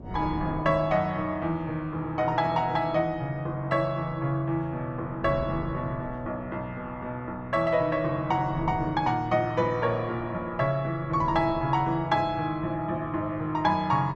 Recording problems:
treble cut off; nothing above 8 kHz
wind noise; below 300 Hz, SNR 16 dB

